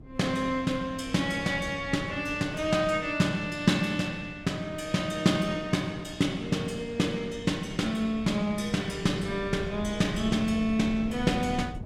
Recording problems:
wind on the microphone; below 190 Hz, SNR 16 dB

